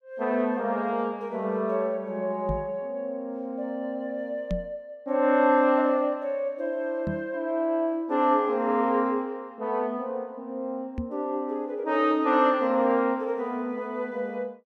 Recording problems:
microphone thump; 4 times, first at 2.5 s; peak -1 dB vs average level

